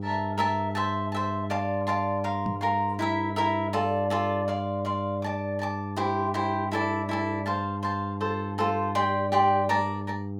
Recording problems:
mains hum; 50 Hz, harmonics up to 900 Hz, SNR 6 dB
microphone thump; at 2.5 s; peak 0 dB vs average level

